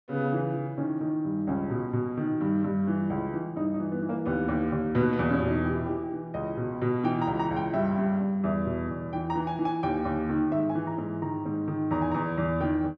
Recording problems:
none

